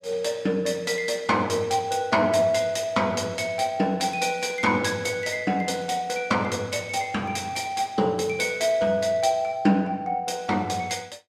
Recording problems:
none

